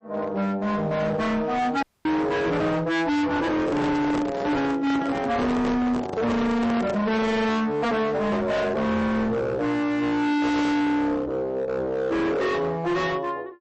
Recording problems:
codec artefacts; MP3, log-spectral distance 2 dB, nothing above 8.2 kHz
distortion; hard clipping, signal-to-distortion ratio 6 dB
audio cutting out; at 2 s
handling noise; from 3.5 to 7 s; peak 0 dB vs average level

